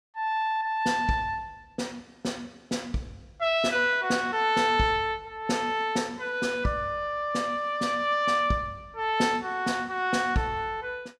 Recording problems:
none

